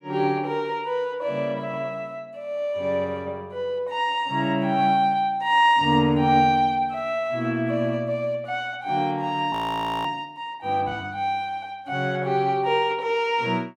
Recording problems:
frozen audio; at 9.5 s for 0.5 s

